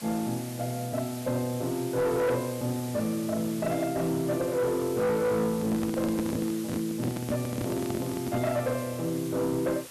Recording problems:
distorted audio; hard clipping, uneven, signal-to-distortion ratio 12 dB
hiss; slope 0 dB per octave, SNR 13 dB
handling noise; from 5.5 to 8.5 s; peak +1 dB vs average level

